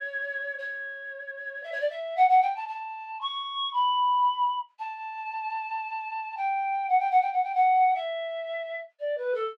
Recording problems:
none

